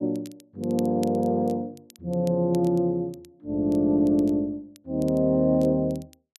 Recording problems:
crackling; vinyl, SNR 27 dB

